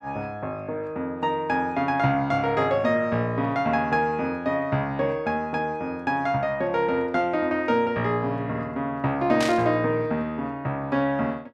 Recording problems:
burst of static; at 9.5 s; peak -1 dB vs average level

